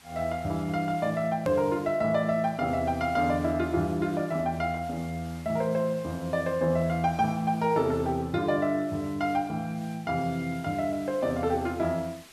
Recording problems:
background hiss; SNR 23 dB
click at an edit; at 1.5 s

